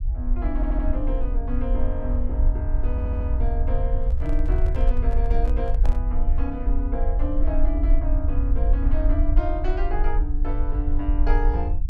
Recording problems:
low-frequency rumble; below 52 Hz, SNR -6 dB
audio stuttering; at 0.5 s and at 3 s
microphone handling noise; from 4 to 6 s; peak -2 dB vs average level

